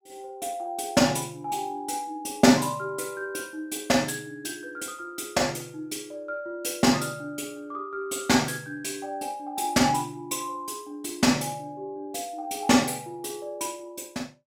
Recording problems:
none

